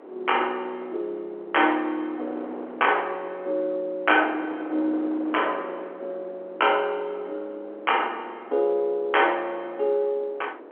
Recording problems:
phone line; 260 Hz to 3.3 kHz, G.711
wind on the microphone; below 700 Hz, SNR 15 dB

